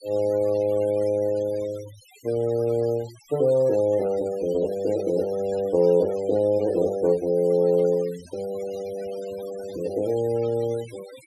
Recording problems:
noise reduction artefacts; signal-to-artefact ratio 21 dB

